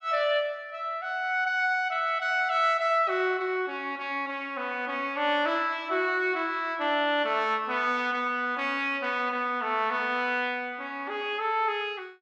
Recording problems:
none

